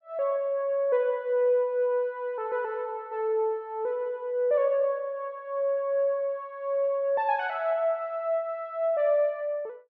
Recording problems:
none

